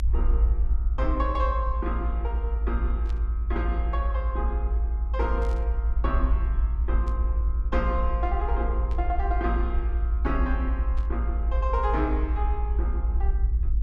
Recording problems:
hum; 60 Hz, harmonics up to 360 Hz, SNR 15 dB
low-frequency rumble; below 56 Hz, strongest tone 54 Hz, SNR -5 dB
burst of static; 5 times, first at 3 s; peak -13 dB vs average level

